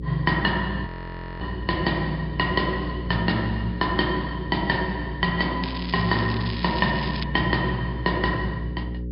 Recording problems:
treble cut off; nothing above 4.8 kHz
lossy compression; MP3, log-spectral distance 3 dB
electrical hum; 60 Hz, harmonics up to 540 Hz, SNR 8 dB
frozen audio; at 1 s for 0.5 s
crackle; from 5.5 to 7 s; loose cable, SNR 11 dB

